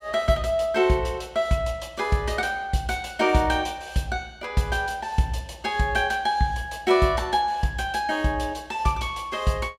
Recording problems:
none

